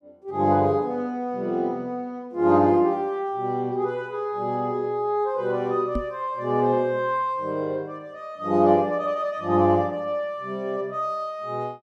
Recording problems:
microphone thump; at 6 s; peak -1 dB vs average level

